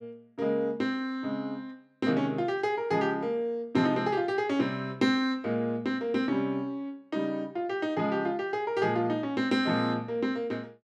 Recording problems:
none

